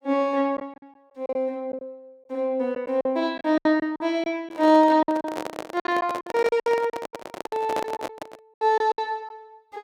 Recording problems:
lost packets; 13% of the sound replaced, filled with silence
microphone handling noise; from 4.5 to 8.5 s; peak -2 dB vs average level

